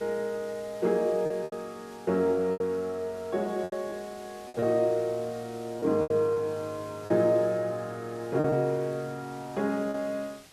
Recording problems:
background hiss; SNR 22 dB
lost packets; 6% of the sound replaced, filled with repeated pitch periods

